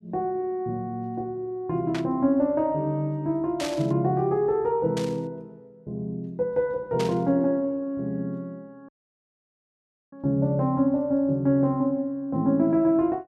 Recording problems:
burst of static; 4 times, first at 2 s; peak -4 dB vs average level
dropout; at 9 s for 1 s

